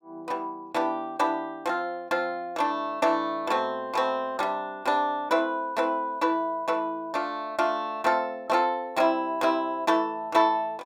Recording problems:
none

